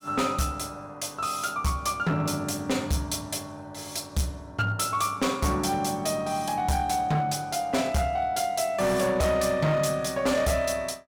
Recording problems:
distorted audio; hard clipping, signal-to-distortion ratio 10 dB

